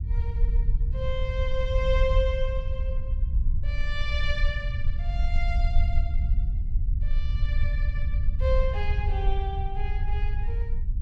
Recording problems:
low-frequency rumble; below 62 Hz, SNR -5 dB

